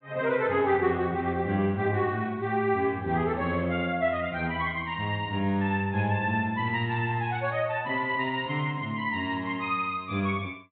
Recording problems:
low-pass filter; nothing above 4 kHz

